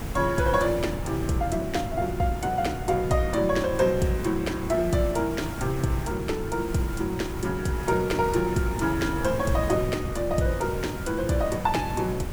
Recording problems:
background hiss; slope -4 dB per octave, SNR 15 dB
wind noise; below 220 Hz, SNR 8 dB

